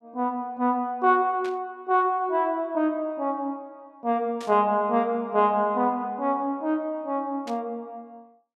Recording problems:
burst of static; at 1.5 s, at 4.5 s and at 7.5 s; peak -12 dB vs average level

